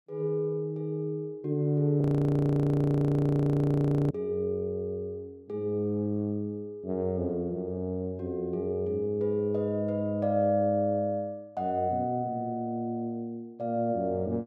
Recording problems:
audio freezing; at 2 s for 2 s

